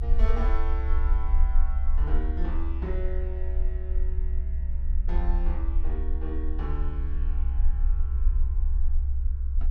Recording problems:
low-frequency rumble; below 64 Hz, SNR -11 dB

